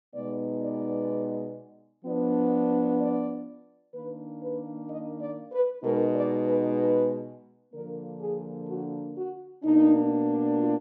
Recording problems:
treble cut off; nothing above 8 kHz

